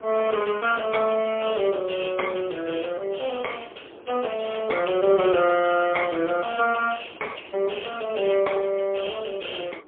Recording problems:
telephone audio; 280 Hz to 2.8 kHz, AMR-NB, then MP3
wind noise; below 620 Hz, SNR 23 dB

